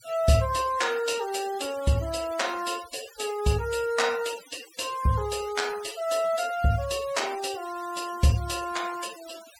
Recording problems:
denoising artefacts; signal-to-artefact ratio 15 dB

